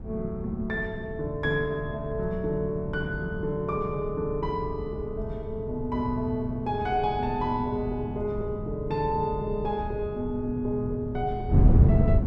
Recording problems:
wind on the microphone; below 160 Hz, SNR 2 dB

